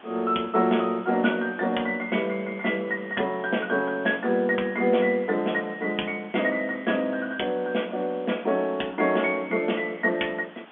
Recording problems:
telephone audio; 170 Hz to 3.5 kHz, G.711
hiss; SNR 23 dB

